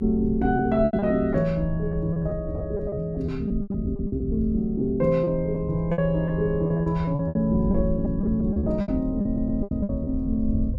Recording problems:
low-frequency rumble; below 94 Hz, SNR 9 dB
lost packets; 13% of the sound replaced, filled with repeated pitch periods
audio stuttering; at 9.5 s

